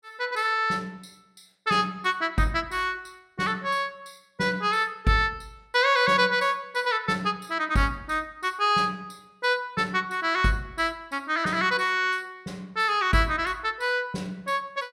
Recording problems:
none

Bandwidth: 16 kHz